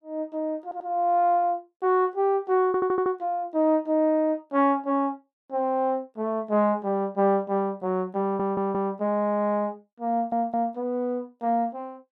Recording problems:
audio stuttering; 4 times, first at 0.5 s

